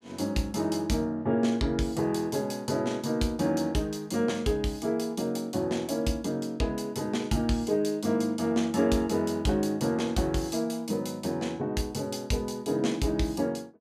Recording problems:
none

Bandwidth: 15 kHz